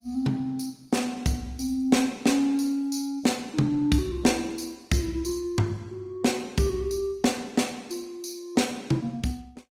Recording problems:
lossy compression; Opus, log-spectral distance 3 dB

